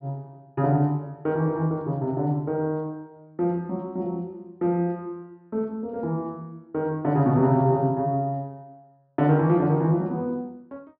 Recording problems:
treble cut off; nothing above 5.1 kHz

